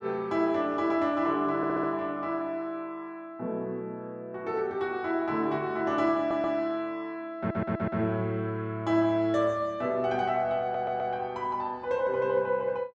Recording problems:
stutter; 4 times, first at 1.5 s

